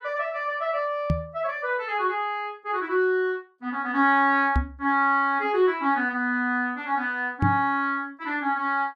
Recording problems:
microphone bump; at 1 s, at 4.5 s and at 7.5 s; peak +4 dB vs average level

